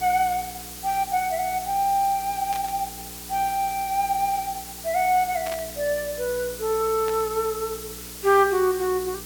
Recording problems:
hum; 60 Hz, harmonics up to 480 Hz, SNR 21 dB
background hiss; slope 0 dB per octave, SNR 11 dB
burst of static; at 2.5 s, at 5.5 s and at 7 s; peak -9 dB vs average level

